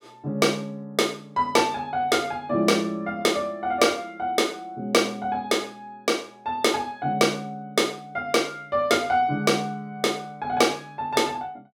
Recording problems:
none

